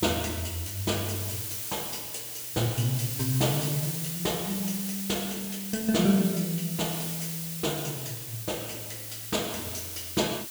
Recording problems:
background hiss; slope +3 dB per octave, SNR 3 dB

